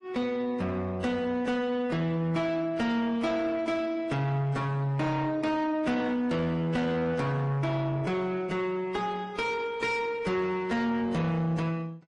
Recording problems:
codec artefacts; MP3, then AAC, log-spectral distance 2 dB, nothing above 10.1 kHz
distortion; soft clipping, signal-to-distortion ratio 9 dB

